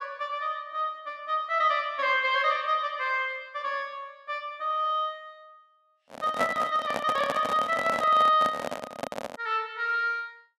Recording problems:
handling noise; from 6 to 9.5 s; peak +1 dB vs average level

